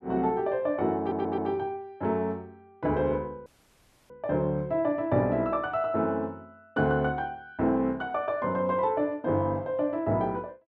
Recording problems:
audio stuttering; at 1 s
dropout; at 3.5 s for 0.5 s

